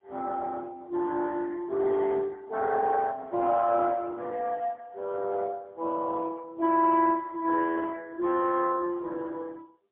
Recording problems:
telephone audio; 300 Hz to 3.1 kHz, AMR-NB, then MP3

